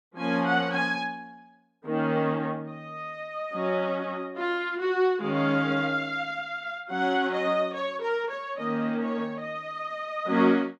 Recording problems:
none

